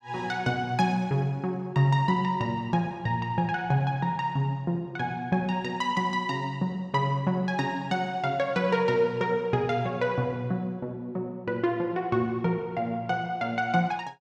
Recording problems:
none

